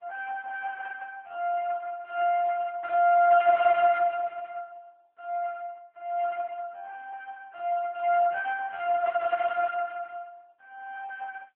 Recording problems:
phone line; 320 Hz to 2 kHz, AMR-NB

